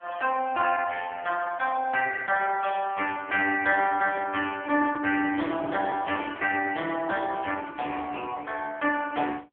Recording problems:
telephone audio; 240 Hz to 2.7 kHz, AMR-NB
handling noise; from 4.5 to 7 s; peak -7 dB vs average level

